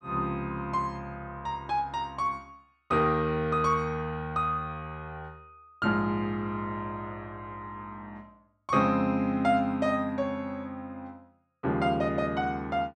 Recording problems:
none

